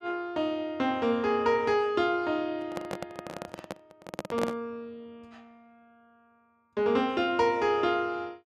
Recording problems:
microphone handling noise; from 2.5 to 4.5 s; peak +1 dB vs average level

